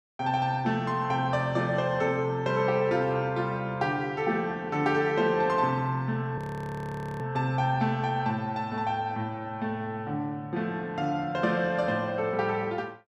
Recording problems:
frozen audio; at 6.5 s for 1 s

